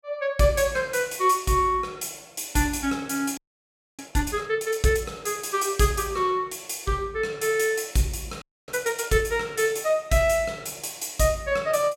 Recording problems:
frozen audio; at 3.5 s for 0.5 s and at 8.5 s

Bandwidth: 16 kHz